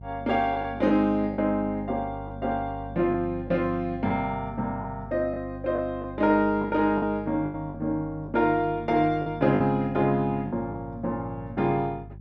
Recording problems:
electrical hum; 50 Hz, harmonics up to 350 Hz, SNR 16 dB
lost packets; 5% of the sound replaced, filled with the last packet

